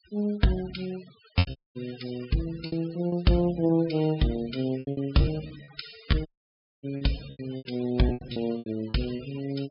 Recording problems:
treble missing; nothing above 5.5 kHz
denoising artefacts; signal-to-artefact ratio 18 dB
packet loss; 13% of the sound replaced, filled with repeated pitch periods
audio cutting out; at 1.5 s and at 6.5 s for 0.5 s

